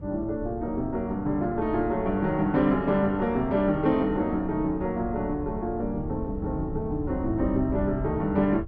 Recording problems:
wind on the microphone; below 110 Hz, SNR 12 dB

